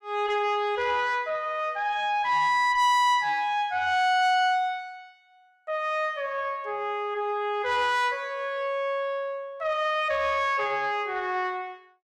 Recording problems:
distortion; soft clipping, signal-to-distortion ratio 11 dB

